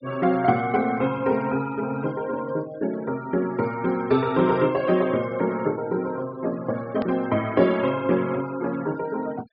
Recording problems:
low-pass filter; nothing above 5.5 kHz
noise reduction artefacts; signal-to-artefact ratio 21 dB
hard cut with a click; at 7 s

